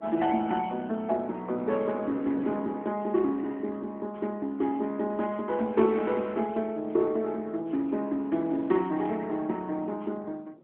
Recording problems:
telephone audio; 190 Hz to 3 kHz, AMR-NB
wind noise; below 440 Hz, SNR 20 dB

